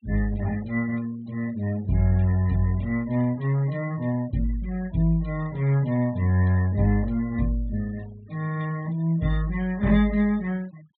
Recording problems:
low-pass filter; nothing above 4 kHz
denoising artefacts; signal-to-artefact ratio 24 dB

